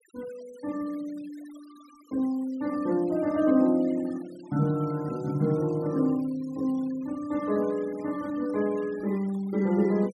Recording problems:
noise reduction artefacts; signal-to-artefact ratio 23 dB

